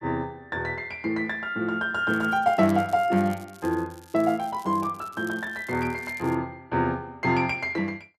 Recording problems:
crackling; from 2 to 6.5 s; loose cable, SNR 24 dB

